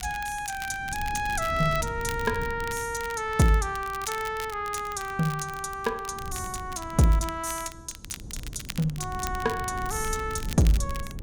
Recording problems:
wind on the microphone; below 140 Hz, SNR 12 dB
crackle; vinyl, SNR 14 dB

